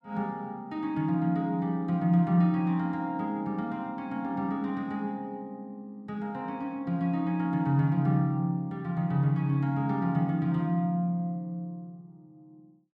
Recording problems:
none

